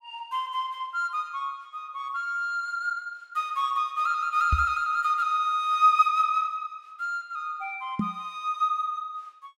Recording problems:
microphone thump; at 4.5 s and at 8 s; peak +5 dB vs average level

